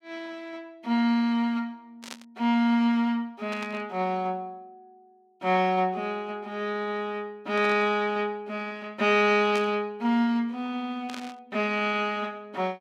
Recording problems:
burst of static; 5 times, first at 2 s; peak -7 dB vs average level

